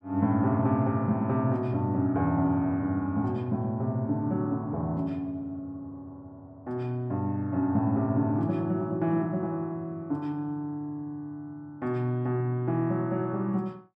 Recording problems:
none

